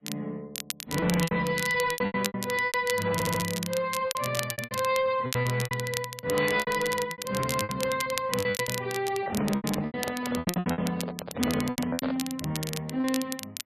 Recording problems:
lossy compression; AAC, then MP3, log-spectral distance 2 dB
distortion; soft clipping, signal-to-distortion ratio 12 dB
crackling; vinyl, SNR 8 dB
packet loss; 17% of the sound replaced, filled with repeated pitch periods
stutter; at 3 s
handling noise; from 9 to 12 s; peak 0 dB vs average level

